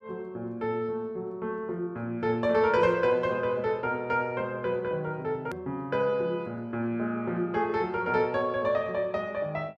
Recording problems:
hard cut with a click; at 5.5 s

